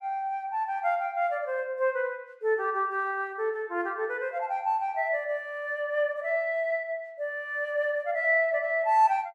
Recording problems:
none

